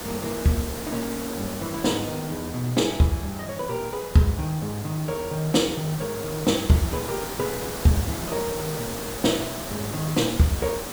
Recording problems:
background hiss; slope -4 dB per octave, SNR 8 dB

